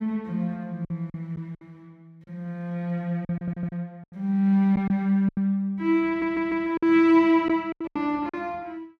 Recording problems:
lost packets; 9% of the sound replaced, filled with silence
stutter; at 3.5 s and at 6 s

